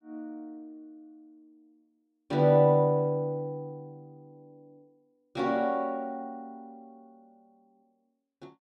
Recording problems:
none

